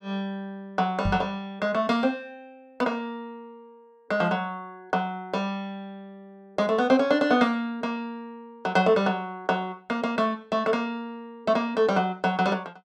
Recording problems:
microphone thump; at 1 s; peak +2 dB vs average level

